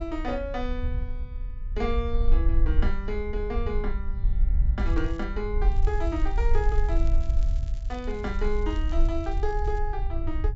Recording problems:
low-pass filter; nothing above 7.6 kHz
rumble; below 52 Hz, strongest tone 20 Hz, SNR -4 dB
crackling; at 5 s and from 5.5 to 10 s; loose cable, SNR 22 dB

